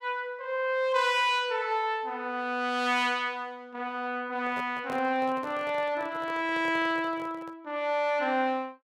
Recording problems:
handling noise; from 4.5 to 7.5 s; peak -8 dB vs average level

